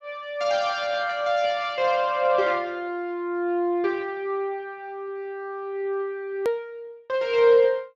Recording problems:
codec artefacts; Speex, log-spectral distance 2 dB, nothing above 15.1 kHz
hard cut with a click; at 6.5 s

